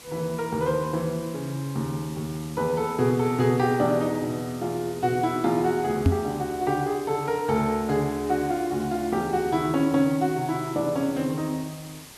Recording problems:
hiss; slope -1 dB per octave, SNR 18 dB
microphone thump; at 6 s; peak +9 dB vs average level

